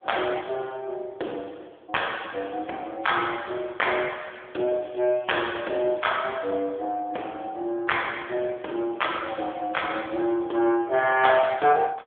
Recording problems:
phone line; 260 Hz to 3.5 kHz, AMR-NB
crackling; at 5 s; loose cable, SNR 28 dB

